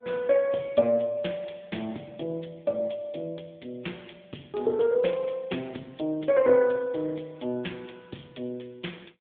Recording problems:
phone line; 170 Hz to 3.6 kHz, AMR-NB

